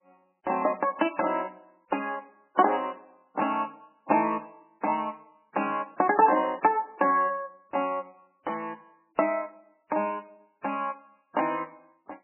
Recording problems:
codec artefacts; MP3, log-spectral distance 4 dB, nothing above 2.7 kHz

